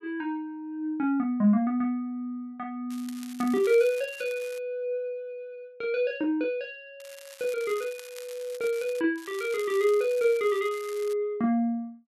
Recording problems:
crackling; from 3 to 4.5 s, from 7 to 9 s and from 9 to 11 s; loose cable, SNR 19 dB

